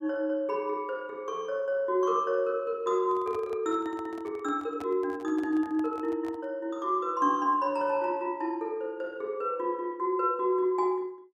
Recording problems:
handling noise; from 3 to 6.5 s; peak -9 dB vs average level

